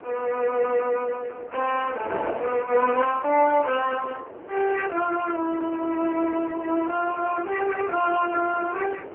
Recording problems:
telephone audio; 280 Hz to 2.7 kHz, AMR-NB
wind noise; below 730 Hz, SNR 13 dB

